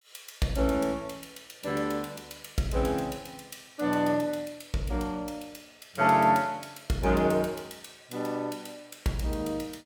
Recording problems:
none

